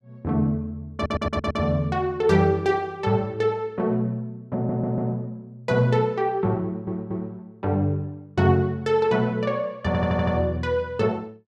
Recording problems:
stutter; 4 times, first at 1 s

